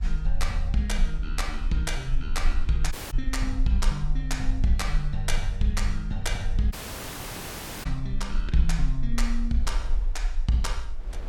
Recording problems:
rumble; below 40 Hz, strongest tone 26 Hz, SNR 1 dB
wind on the microphone; below 790 Hz, SNR 26 dB
dropout; at 3 s and at 6.5 s for 1 s

